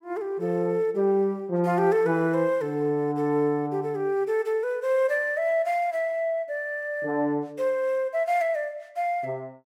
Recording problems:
none

